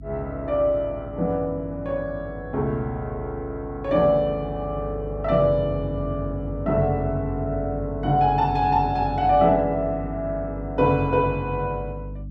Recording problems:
hum; 50 Hz, harmonics up to 300 Hz, SNR 12 dB

